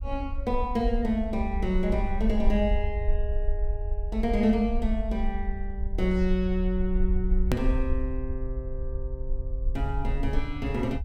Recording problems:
rumble; below 54 Hz, SNR 2 dB
click at an edit; at 7.5 s

